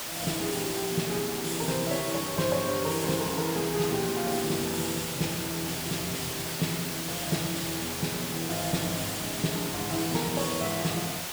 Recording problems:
background hiss; slope -1 dB per octave, SNR 2 dB

